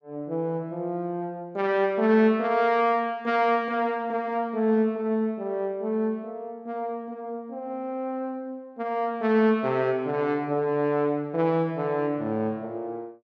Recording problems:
none

